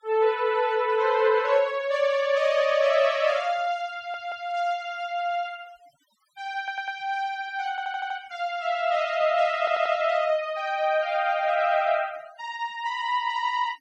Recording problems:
noise reduction artefacts; signal-to-artefact ratio 25 dB
audio stuttering; 4 times, first at 4 s

